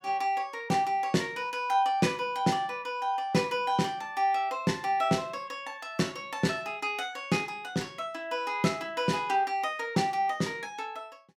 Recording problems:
none

